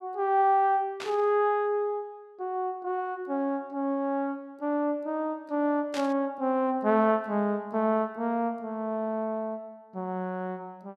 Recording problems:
burst of static; at 1 s and at 6 s; peak -5 dB vs average level

